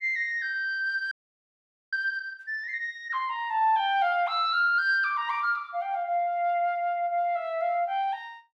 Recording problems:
frozen audio; at 1 s for 1 s

